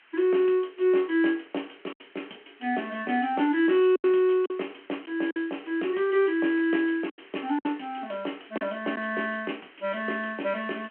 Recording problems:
telephone audio; 240 Hz to 3.3 kHz, G.726
hiss; SNR 27 dB
lost packets; 4% of the sound replaced, filled with silence

